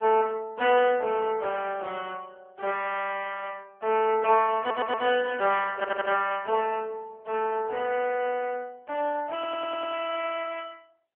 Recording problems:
telephone audio; 320 Hz to 3.2 kHz, AMR-NB
audio stuttering; at 4.5 s, at 6 s and at 9.5 s

